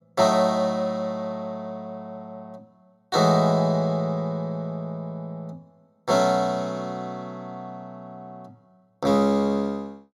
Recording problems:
none

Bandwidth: 16 kHz